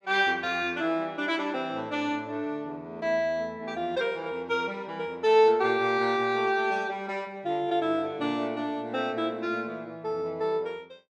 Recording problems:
none

